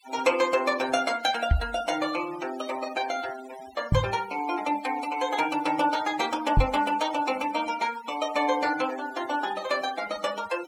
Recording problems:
noise reduction artefacts; signal-to-artefact ratio 15 dB
microphone thump; at 1.5 s, at 4 s and at 6.5 s; peak +8 dB vs average level

